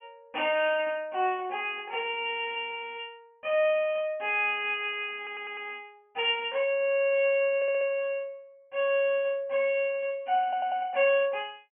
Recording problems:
low-pass filter; nothing above 3.1 kHz
stutter; at 5 s, at 7.5 s and at 10 s

